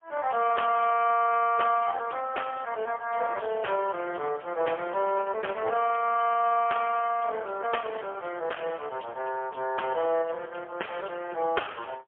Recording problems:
phone line; 340 Hz to 2.8 kHz, AMR-NB, then MP3

